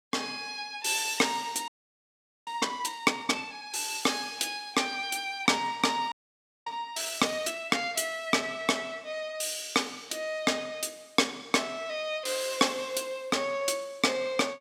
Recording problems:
audio freezing; at 1.5 s for 1 s and at 6 s for 0.5 s

